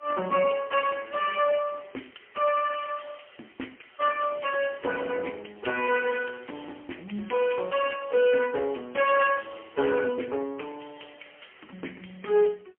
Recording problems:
phone line; 220 Hz to 3.1 kHz, AMR-NB, then MP3

